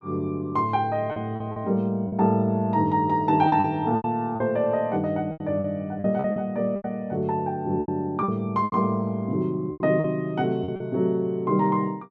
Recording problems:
lost packets; 9% of the sound replaced, filled with repeated pitch periods

